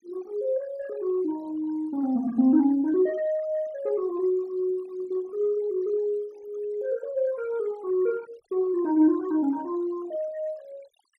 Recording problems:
noise reduction artefacts; signal-to-artefact ratio 24 dB

